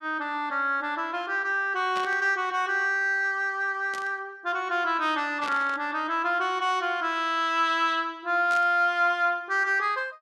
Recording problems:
burst of static; 4 times, first at 2 s; peak -8 dB vs average level

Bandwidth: 12.5 kHz